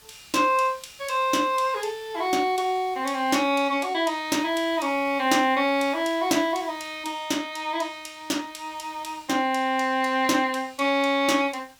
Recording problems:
hiss; slope 0 dB per octave, SNR 27 dB

